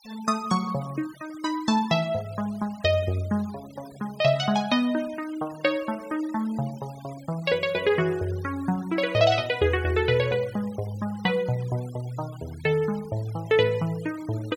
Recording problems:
denoising artefacts; signal-to-artefact ratio 22 dB

